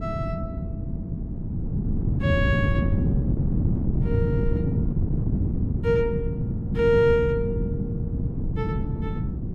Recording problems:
wind noise; below 190 Hz, SNR 0 dB

